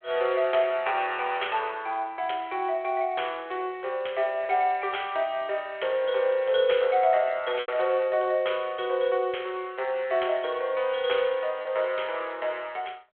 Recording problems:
phone line; 340 Hz to 3.3 kHz, G.726
packet loss; 0.9% of the sound replaced, filled with repeated pitch periods

